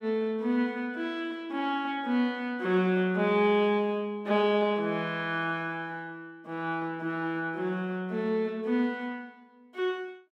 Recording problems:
none

